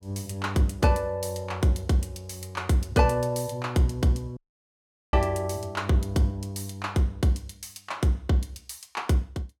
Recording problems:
dropout; at 4.5 s for 1 s

